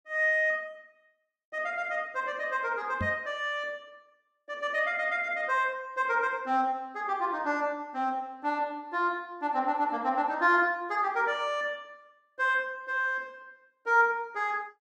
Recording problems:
microphone bump; at 3 s; peak -1 dB vs average level

